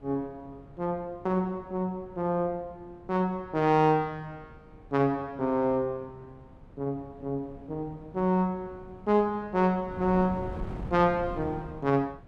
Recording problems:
wind on the microphone; below 270 Hz, SNR 17 dB

